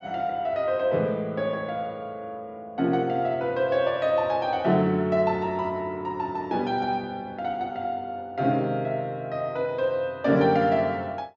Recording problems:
low-pass filter; nothing above 8 kHz

